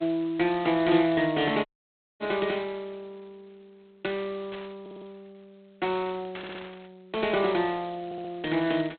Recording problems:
phone line; 240 Hz to 3.8 kHz, G.726
static burst; at 1.5 s, at 4.5 s and at 6.5 s; peak -10 dB vs average level
audio cutting out; at 1.5 s for 0.5 s
audio stuttering; at 5 s, at 6.5 s and at 8 s

